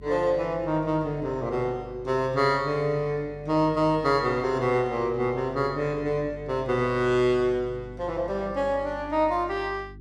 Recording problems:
electrical hum; 50 Hz, harmonics up to 400 Hz, SNR 20 dB

